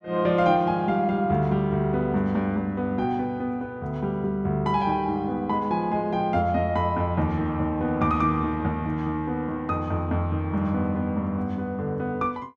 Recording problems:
none

